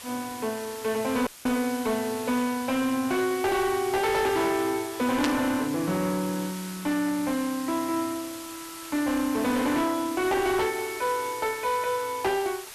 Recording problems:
distorted audio; hard clipping, signal-to-distortion ratio 10 dB
background hiss; slope +1 dB per octave, SNR 12 dB
dropout; at 1.5 s; filled with static
burst of static; at 5 s; peak +2 dB vs average level

